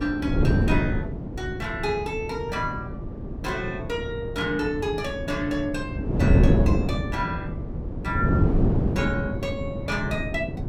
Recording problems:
wind on the microphone; below 270 Hz, SNR -3 dB

